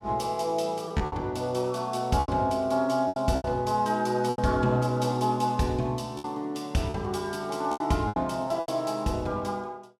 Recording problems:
lost packets; 8% of the sound replaced, filled with repeated pitch periods

